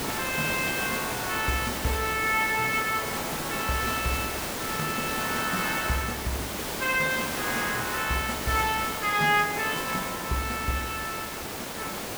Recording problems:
hiss; slope -4 dB per octave, SNR 3 dB

